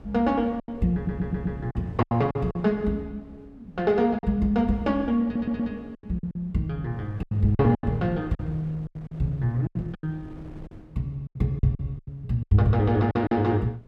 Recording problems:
wind noise; below 300 Hz, SNR 21 dB
packet loss; 11% of the sound replaced, filled with silence
audio stuttering; at 1 s and at 5 s

